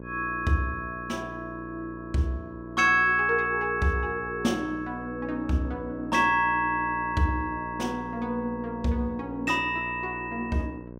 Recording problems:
hum; 60 Hz, harmonics up to 1.1 kHz, SNR 14 dB

